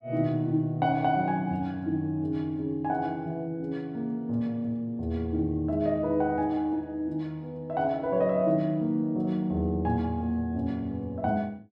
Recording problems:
none

